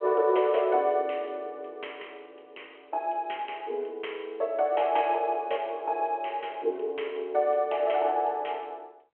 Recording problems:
telephone audio; 280 Hz to 3.3 kHz, G.726

